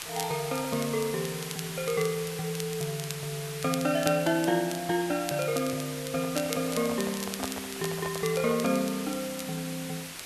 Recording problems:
background hiss; slope 0 dB per octave, SNR 8 dB
crackling; vinyl, SNR 12 dB
handling noise; from 6 to 8.5 s; peak -1 dB vs average level

